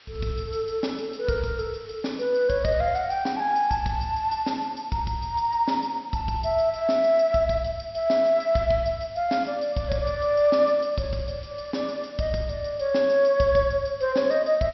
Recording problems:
low-pass filter; nothing above 5.7 kHz
hiss; slope +1 dB per octave, SNR 27 dB

